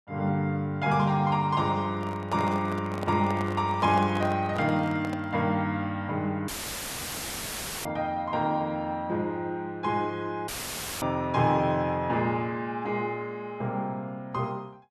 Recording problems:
handling noise; from 2 to 5.5 s; peak -4 dB vs average level
dropout; at 6.5 s for 1.5 s and at 10 s for 0.5 s; filled with static

